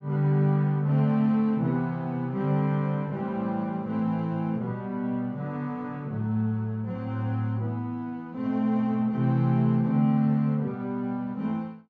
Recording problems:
treble missing; nothing above 8 kHz

